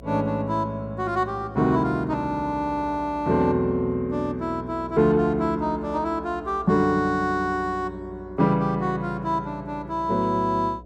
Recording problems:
electrical hum; 60 Hz, harmonics up to 720 Hz, SNR 21 dB

